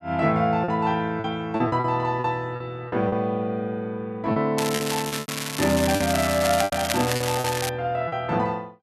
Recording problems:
lost packets; 9% of the sound replaced, filled with repeated pitch periods
crackling; from 4.5 to 7.5 s; loose cable, SNR 5 dB

